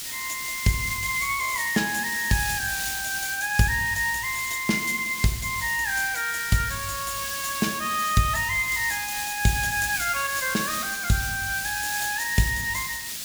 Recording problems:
background hiss; SNR 5 dB

